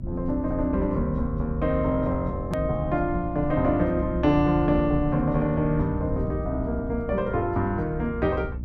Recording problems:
electrical hum; 60 Hz, harmonics up to 600 Hz, SNR 13 dB
low-frequency rumble; below 80 Hz, SNR 9 dB
hard cut with a click; at 2.5 s

